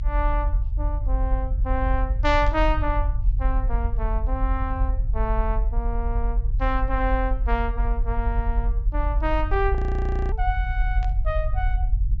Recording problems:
low-pass filter; nothing above 8 kHz
low-frequency rumble; below 52 Hz, SNR -3 dB
static burst; at 2.5 s and at 11 s; peak -10 dB vs average level
frozen audio; at 10 s for 0.5 s

